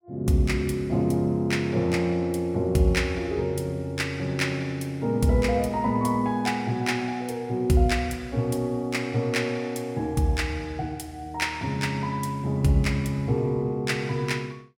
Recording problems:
none

